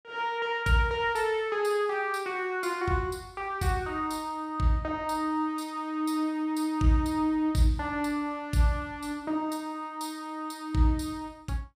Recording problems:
none

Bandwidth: 15 kHz